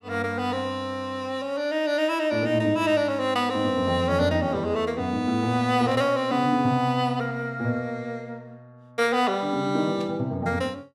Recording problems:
static burst; at 6 s and at 10 s; peak -15 dB vs average level

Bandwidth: 15 kHz